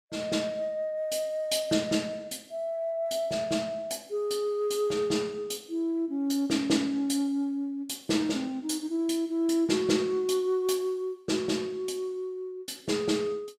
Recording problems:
none

